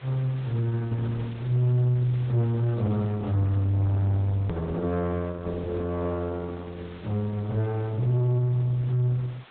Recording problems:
low-pass filter; nothing above 4 kHz
codec artefacts; Opus, log-spectral distance 3 dB
distorted audio; soft clipping, signal-to-distortion ratio 10 dB
hiss; SNR 21 dB
click at an edit; at 4.5 s

